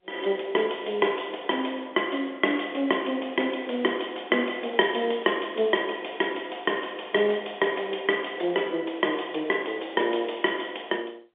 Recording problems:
phone line; 220 Hz to 3.5 kHz, G.711

